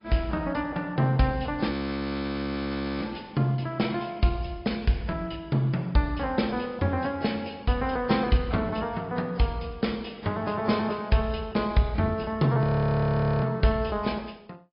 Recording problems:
treble missing; nothing above 5.2 kHz
codec artefacts; AAC, log-spectral distance 3 dB
audio freezing; at 1.5 s for 1.5 s and at 13 s for 1 s

